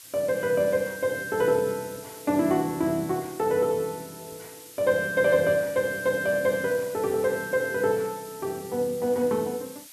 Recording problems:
hiss; slope +3 dB per octave, SNR 18 dB

